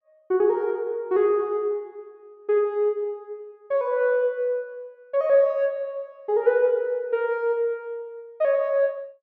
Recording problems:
none

